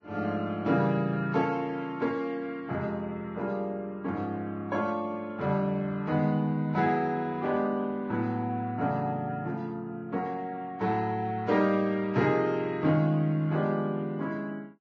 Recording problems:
lossy compression; Vorbis, log-spectral distance 2 dB

